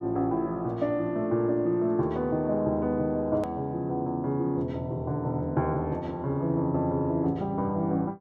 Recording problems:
hard cut with a click; at 3.5 s

